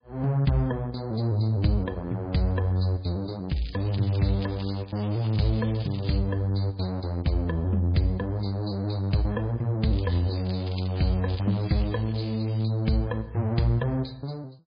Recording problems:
lossy compression; MP3, log-spectral distance 4 dB, nothing above 4.6 kHz
crackle; from 3.5 to 6 s and from 10 to 13 s; loose cable, SNR 18 dB

